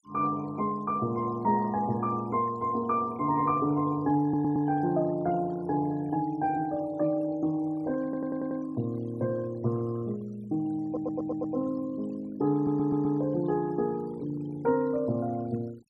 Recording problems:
noise reduction artefacts; signal-to-artefact ratio 25 dB
stutter; 4 times, first at 4 s

